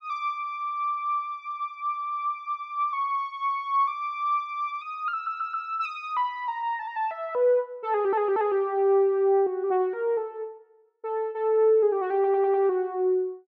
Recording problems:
stutter; at 5 s, at 8 s and at 12 s

